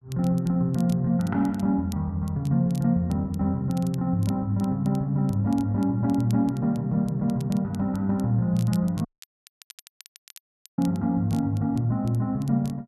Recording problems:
crackle; vinyl, SNR 25 dB
audio cutting out; at 9 s for 1.5 s

